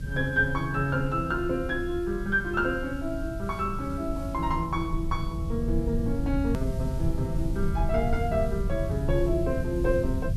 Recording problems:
hum; 50 Hz, harmonics up to 600 Hz, SNR 21 dB
background hiss; slope +1 dB per octave, SNR 24 dB
low-frequency rumble; below 120 Hz, SNR 4 dB
edit click; at 6.5 s

